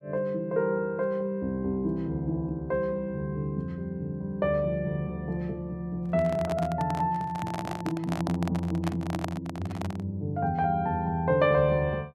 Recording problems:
microphone handling noise; from 6 to 10 s; peak 0 dB vs average level

